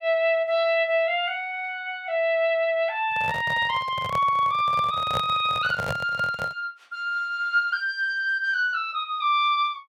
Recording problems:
microphone handling noise; from 3 to 6.5 s; peak -2 dB vs average level

